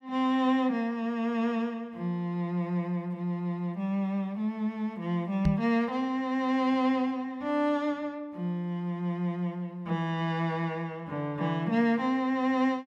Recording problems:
microphone thump; at 5.5 s; peak +6 dB vs average level

